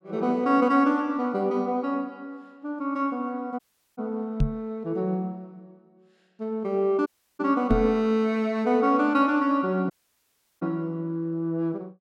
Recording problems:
dropout; at 3.5 s, at 7 s and at 10 s for 0.5 s
knock on the microphone; at 4.5 s and at 7.5 s; peak +5 dB vs average level

